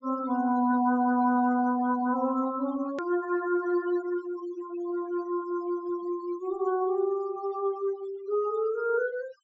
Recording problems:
low-pass filter; nothing above 8 kHz
denoising artefacts; signal-to-artefact ratio 18 dB
hard cut with a click; at 3 s

